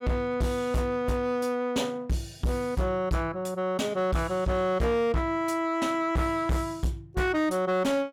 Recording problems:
distorted audio; hard clipping, signal-to-distortion ratio 10 dB

